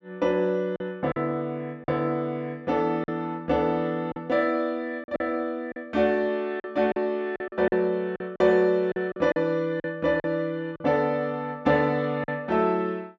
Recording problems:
packet loss; 7% of the sound replaced, filled with silence

